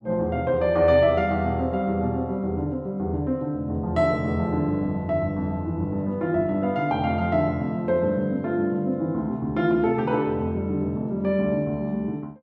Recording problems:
none

